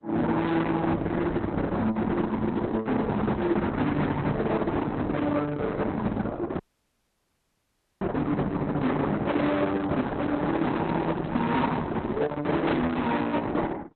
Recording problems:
lossy compression; Opus, log-spectral distance 3 dB, nothing above 4 kHz
distorted audio; hard clipping, signal-to-distortion ratio 8 dB
dropout; at 6.5 s for 1.5 s
microphone handling noise; from 9.5 to 12 s; peak +2 dB vs average level

